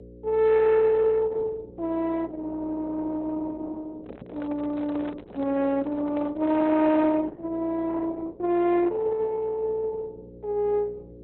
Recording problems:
lossy compression; Opus, log-spectral distance 2 dB, nothing above 4 kHz
electrical hum; 60 Hz, harmonics up to 540 Hz, SNR 20 dB
microphone handling noise; from 4 to 7 s; peak -8 dB vs average level

